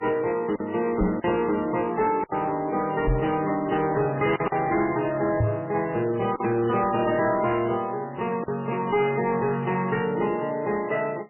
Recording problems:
lossy codec; MP3, log-spectral distance 4 dB, nothing above 3 kHz
distortion; soft clipping, signal-to-distortion ratio 11 dB
packet loss; 3% of the sound replaced, filled with silence
knock on the microphone; at 1 s, at 3 s and at 5.5 s; peak +5 dB vs average level

